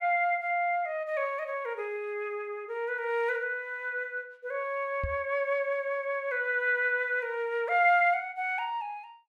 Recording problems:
microphone thump; at 5 s; peak -1 dB vs average level

